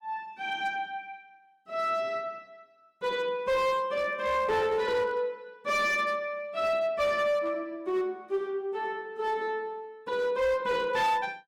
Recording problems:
distortion; hard clipping, signal-to-distortion ratio 11 dB

